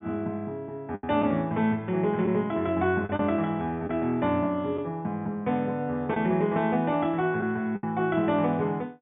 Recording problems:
low-pass filter; nothing above 3.6 kHz
lost packets; 3% of the sound replaced, filled with the last packet

